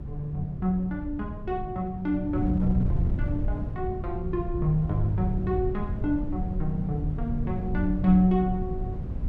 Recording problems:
wind on the microphone; below 120 Hz, SNR 4 dB

